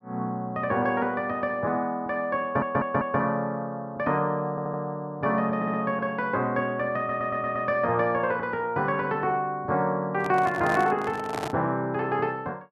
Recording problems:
stutter; 4 times, first at 2.5 s
microphone handling noise; from 10 to 12 s; peak -1 dB vs average level

